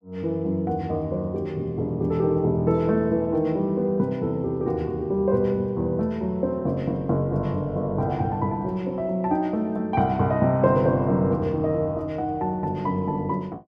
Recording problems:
none

